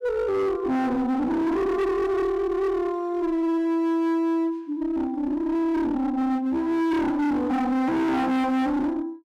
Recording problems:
distorted audio; hard clipping, uneven, signal-to-distortion ratio 6 dB

